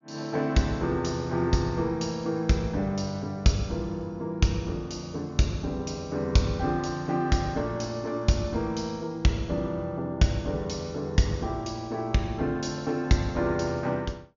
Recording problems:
treble cut off; nothing above 7 kHz

